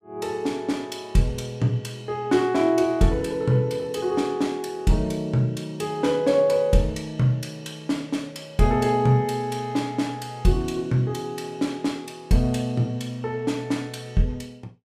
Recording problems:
none

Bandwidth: 15 kHz